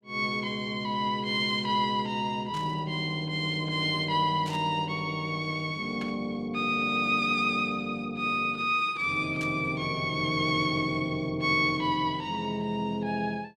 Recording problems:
burst of static; 4 times, first at 2.5 s; peak -10 dB vs average level

